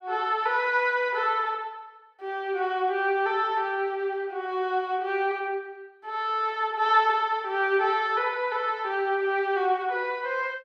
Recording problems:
none

